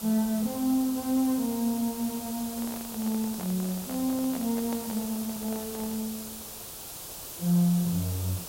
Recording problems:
hiss; SNR 9 dB
microphone handling noise; from 2.5 to 6 s; peak -6 dB vs average level

